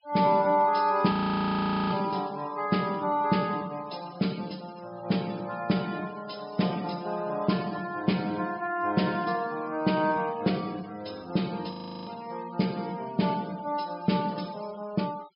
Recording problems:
treble cut off; nothing above 5.5 kHz
denoising artefacts; signal-to-artefact ratio 21 dB
audio freezing; at 1 s for 1 s and at 12 s

